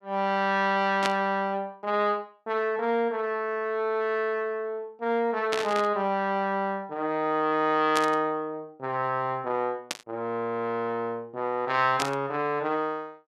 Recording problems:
burst of static; 5 times, first at 1 s; peak +2 dB vs average level

